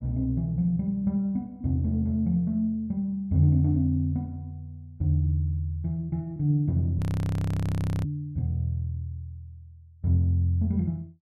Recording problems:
audio freezing; at 7 s for 1 s

